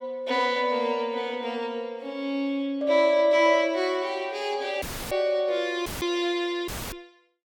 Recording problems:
audio cutting out; at 5 s, at 6 s and at 6.5 s; filled with static

